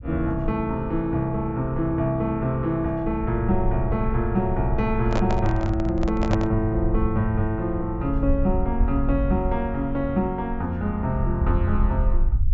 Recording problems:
treble cut off; nothing above 8 kHz
low-frequency rumble; below 64 Hz, SNR 5 dB
handling noise; from 5 to 6.5 s; peak +2 dB vs average level

